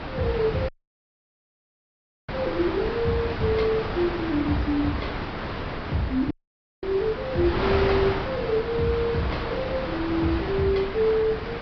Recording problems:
treble missing; nothing above 5.5 kHz
lossy codec; AAC, log-spectral distance 3 dB
hiss; SNR 22 dB
wind noise; below 1.5 kHz, SNR 5 dB
dropout; at 0.5 s for 1.5 s and at 6.5 s for 0.5 s

